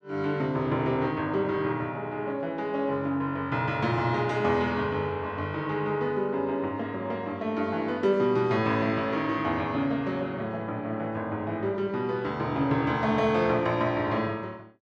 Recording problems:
none

